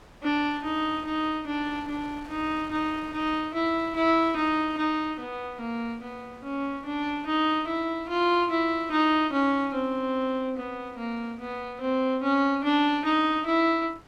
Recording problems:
wind on the microphone; below 1.5 kHz, SNR 23 dB

